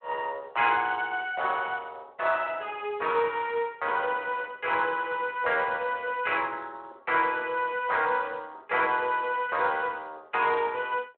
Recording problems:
phone line; 340 Hz to 3.3 kHz, Speex

